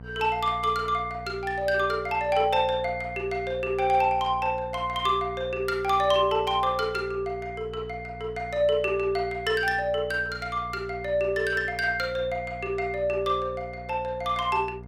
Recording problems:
hum; 60 Hz, harmonics up to 960 Hz, SNR 16 dB

